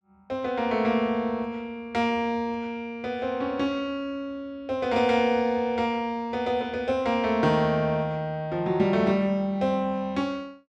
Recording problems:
none

